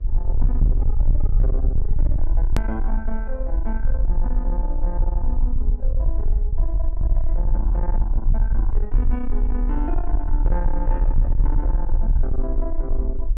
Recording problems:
distorted audio; soft clipping, signal-to-distortion ratio 7 dB
electrical hum; 50 Hz, harmonics up to 1.3 kHz, SNR 22 dB
low-frequency rumble; below 44 Hz, SNR -9 dB
click at an edit; at 2.5 s

